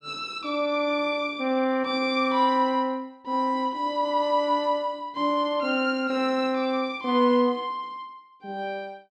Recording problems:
none

